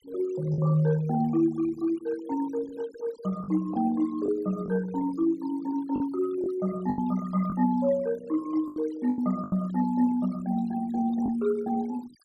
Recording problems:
noise reduction artefacts; signal-to-artefact ratio 20 dB
lost packets; 5% of the sound replaced, filled with the last packet

